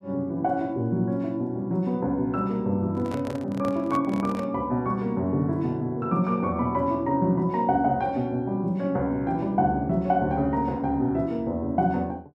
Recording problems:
handling noise; from 3 to 4.5 s; peak -6 dB vs average level

